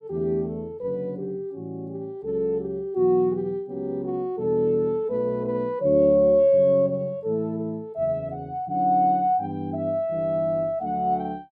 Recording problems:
none

